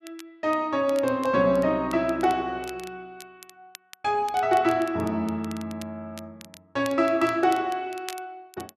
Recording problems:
crackle; vinyl, SNR 21 dB

